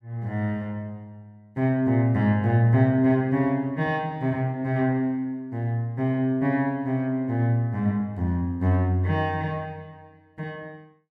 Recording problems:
none

